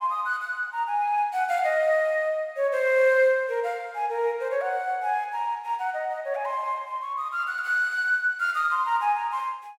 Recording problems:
none

